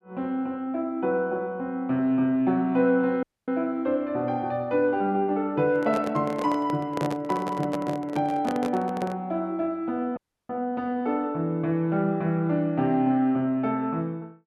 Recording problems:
audio cutting out; at 3 s and at 10 s
microphone handling noise; from 5.5 to 9.5 s; peak -2 dB vs average level

